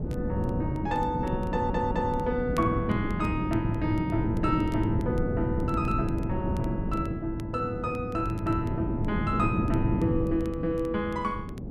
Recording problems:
wind noise; below 270 Hz, SNR 1 dB
crackle; vinyl, SNR 27 dB
audio stuttering; at 1.5 s

